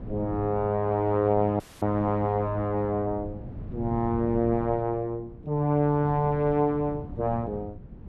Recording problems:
wind on the microphone; below 200 Hz, SNR 15 dB
dropout; at 1.5 s

